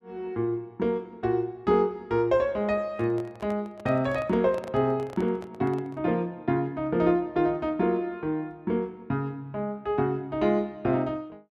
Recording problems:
microphone handling noise; from 3 to 6 s; peak -10 dB vs average level

